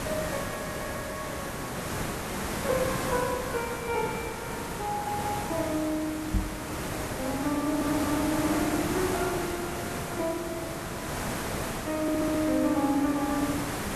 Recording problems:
background hiss; slope -5 dB per octave, SNR 2 dB
stutter; 4 times, first at 0.5 s
microphone thump; at 6.5 s; peak +5 dB vs average level

